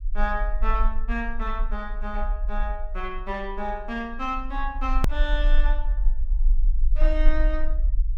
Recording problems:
rumble; below 40 Hz, strongest tone 26 Hz, SNR -4 dB
hard cut with a click; at 5 s

